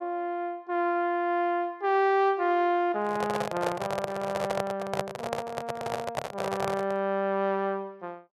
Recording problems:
handling noise; from 3 to 7 s; peak +3 dB vs average level

